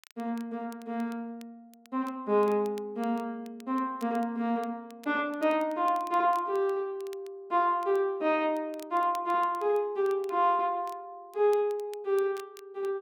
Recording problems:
crackling; vinyl, SNR 27 dB

